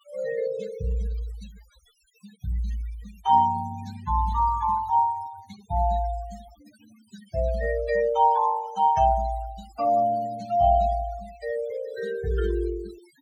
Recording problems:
denoising artefacts; signal-to-artefact ratio 19 dB

